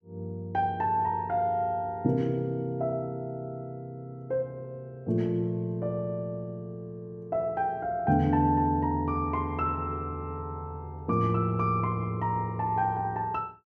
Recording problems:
none

